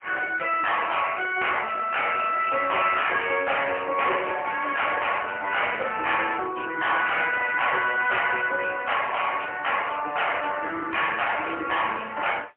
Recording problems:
telephone audio; 300 Hz to 3.1 kHz, AMR-NB, then MP3
distorted audio; soft clipping, signal-to-distortion ratio 11 dB

